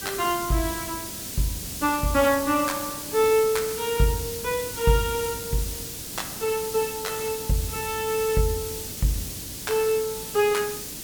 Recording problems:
hiss; SNR 6 dB

